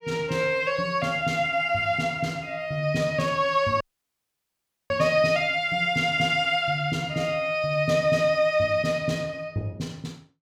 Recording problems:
dropout; at 4 s for 1 s

